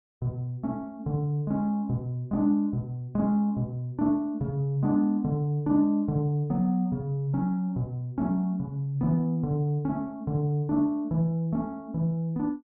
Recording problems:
none

